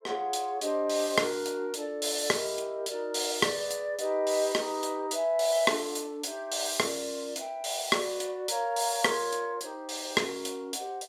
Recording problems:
none

